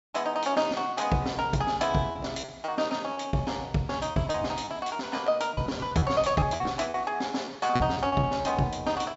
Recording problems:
treble cut off; nothing above 8 kHz
lost packets; 11% of the sound replaced, filled with repeated pitch periods

